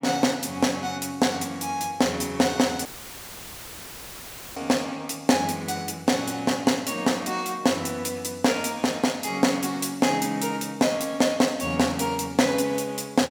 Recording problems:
audio cutting out; at 3 s for 1.5 s; filled with static

